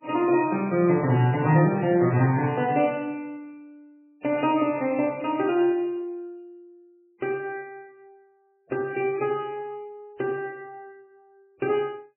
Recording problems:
lossy compression; MP3, log-spectral distance 2 dB, nothing above 2.5 kHz

